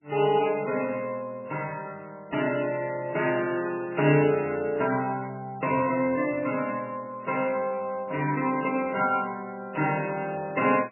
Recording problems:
codec artefacts; MP3, log-spectral distance 4 dB, nothing above 2.9 kHz

